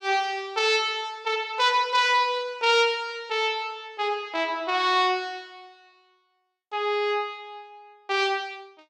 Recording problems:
none

